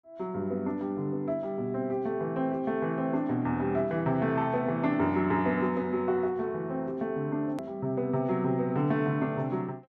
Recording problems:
click at an edit; at 7.5 s

